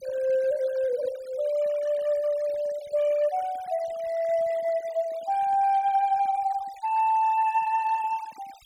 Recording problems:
denoising artefacts; signal-to-artefact ratio 23 dB

